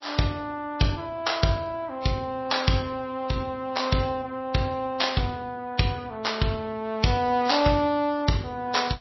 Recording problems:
lossy compression; Vorbis, then MP3, log-spectral distance 4 dB, nothing above 5.7 kHz

